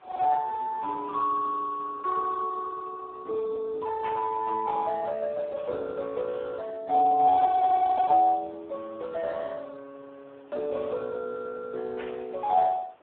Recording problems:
phone line; 320 Hz to 2 kHz, Speex
background hiss; SNR 29 dB
burst of static; at 4 s and at 12 s; peak -8 dB vs average level

